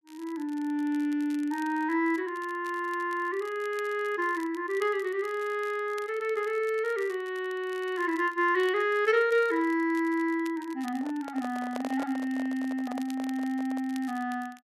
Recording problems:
crackling; vinyl, SNR 24 dB
microphone handling noise; from 11 to 14 s; peak -4 dB vs average level

